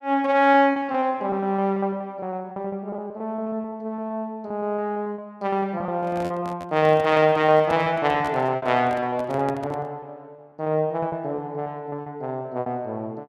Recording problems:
packet loss; 15% of the sound replaced, filled with repeated pitch periods
handling noise; from 6 to 10 s; peak -7 dB vs average level

